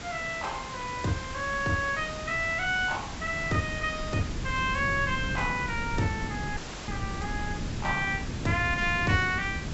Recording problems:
low-pass filter; nothing above 7.7 kHz
background hiss; slope -2 dB per octave, SNR 12 dB
wind on the microphone; below 220 Hz, SNR 8 dB
dropout; at 6.5 s

